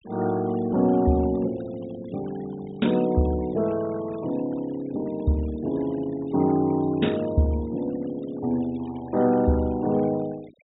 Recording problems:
low-pass filter; nothing above 4 kHz
noise reduction artefacts; signal-to-artefact ratio 23 dB

